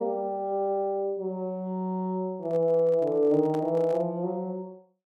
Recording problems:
handling noise; from 2.5 to 4 s; peak -10 dB vs average level

